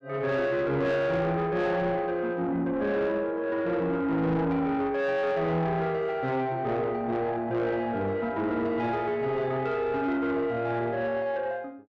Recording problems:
distorted audio; soft clipping, signal-to-distortion ratio 11 dB

